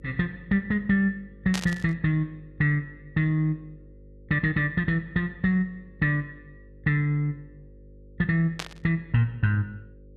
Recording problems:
electrical hum; 50 Hz, harmonics up to 550 Hz, SNR 24 dB
static burst; at 1.5 s and at 8.5 s; peak 0 dB vs average level

